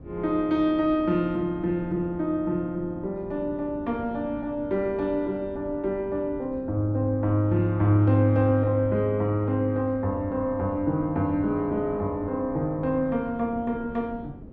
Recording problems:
wind noise; below 290 Hz, SNR 18 dB

